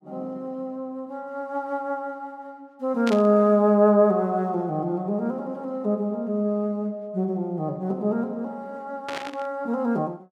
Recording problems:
burst of static; at 3 s and at 9 s; peak -3 dB vs average level

